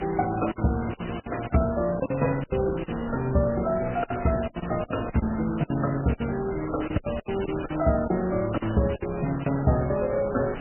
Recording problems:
lossy codec; MP3, log-spectral distance 20 dB, nothing above 2.7 kHz
hum; 50 Hz, harmonics up to 300 Hz, SNR 21 dB
background hiss; SNR 11 dB
wind noise; below 220 Hz, SNR 17 dB
packet loss; 11% of the sound replaced, filled with silence

